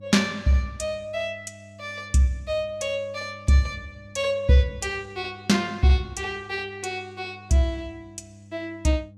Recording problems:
hum; 50 Hz, harmonics up to 500 Hz, SNR 22 dB

